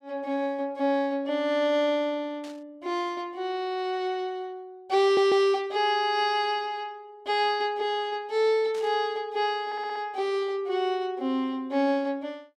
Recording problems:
burst of static; at 2.5 s and at 8.5 s; peak -14 dB vs average level
stutter; at 5 s and at 9.5 s

